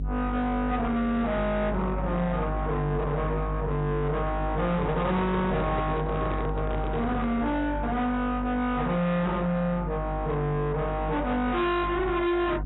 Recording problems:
codec artefacts; AAC, log-spectral distance 2 dB, nothing above 3.9 kHz
distorted audio; soft clipping, signal-to-distortion ratio 7 dB
hum; 50 Hz, harmonics up to 750 Hz, SNR 5 dB
microphone handling noise; from 4.5 to 7.5 s; peak 0 dB vs average level

